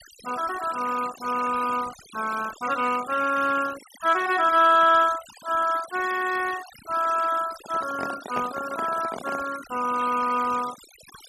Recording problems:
noise reduction artefacts; signal-to-artefact ratio 15 dB
handling noise; from 7.5 to 9.5 s; peak -5 dB vs average level

